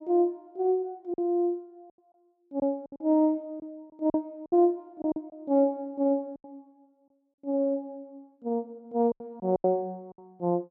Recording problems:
packet loss; 8% of the sound replaced, filled with silence

